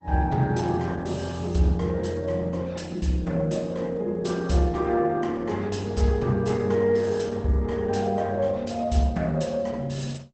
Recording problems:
codec artefacts; Opus, log-spectral distance 3 dB, nothing above 8.2 kHz

